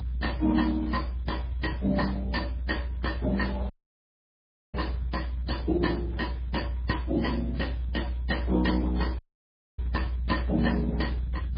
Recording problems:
codec artefacts; Speex, then MP3, log-spectral distance 3 dB, nothing above 4.6 kHz
low-frequency rumble; below 64 Hz, strongest tone 60 Hz, SNR 4 dB
dropout; at 3.5 s for 1 s and at 9 s for 0.5 s

